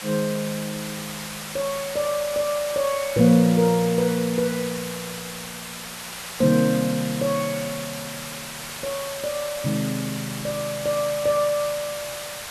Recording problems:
hiss; SNR 9 dB

